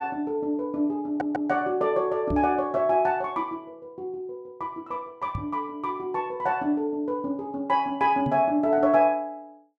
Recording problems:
stutter; at 1 s
microphone bump; at 2.5 s, at 5.5 s and at 8.5 s; peak -1 dB vs average level

